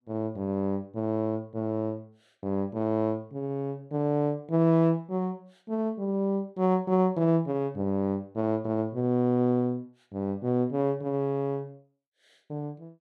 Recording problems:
none

